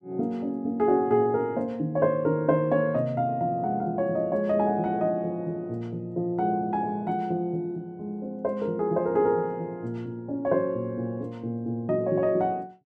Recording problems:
none

